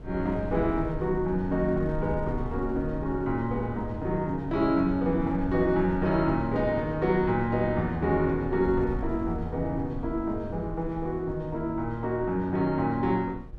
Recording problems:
mains hum; 60 Hz, harmonics up to 1.2 kHz, SNR 26 dB
wind noise; below 96 Hz, SNR 12 dB

